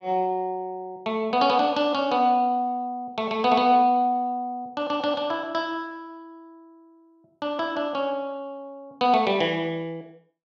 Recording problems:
none

